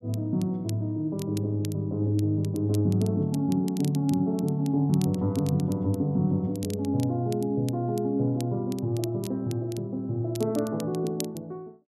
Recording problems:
crackle; vinyl, SNR 19 dB

